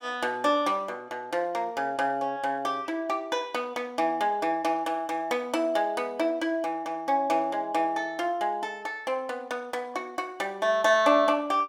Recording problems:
none

